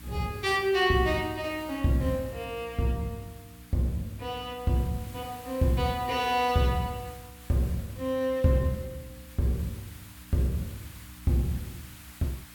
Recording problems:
hum; 60 Hz, harmonics up to 300 Hz, SNR 22 dB
background hiss; SNR 20 dB

